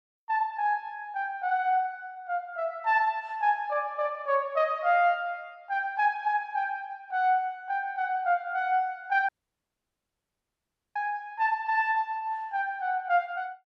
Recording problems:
dropout; at 9.5 s for 1.5 s

